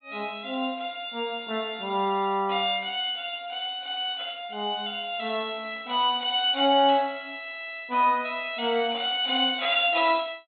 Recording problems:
low-pass filter; nothing above 4 kHz

